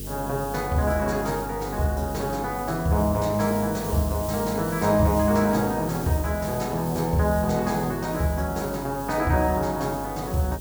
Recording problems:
mains hum; 50 Hz, harmonics up to 500 Hz, SNR 14 dB
hiss; slope +4 dB per octave, SNR 14 dB

